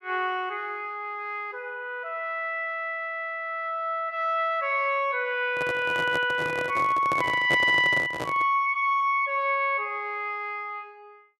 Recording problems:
microphone handling noise; from 5.5 to 8.5 s; peak 0 dB vs average level

